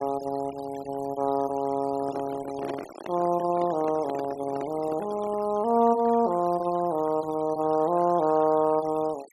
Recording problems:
noise reduction artefacts; signal-to-artefact ratio 21 dB
microphone handling noise; from 2 to 5.5 s; peak -5 dB vs average level

